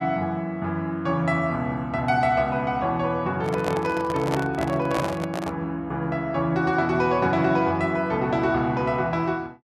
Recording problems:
microphone handling noise; from 3.5 to 5.5 s; peak +1 dB vs average level

